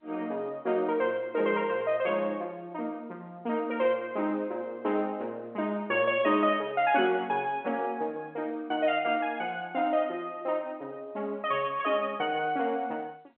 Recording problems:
phone line; 280 Hz to 3.3 kHz, G.711

